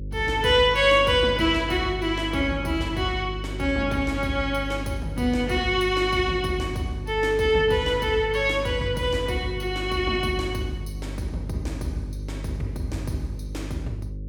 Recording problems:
electrical hum; 50 Hz, harmonics up to 450 Hz, SNR 10 dB

